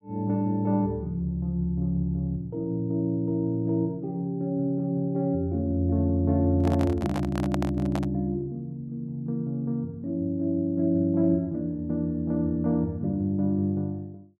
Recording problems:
microphone handling noise; from 6.5 to 8 s; peak -1 dB vs average level

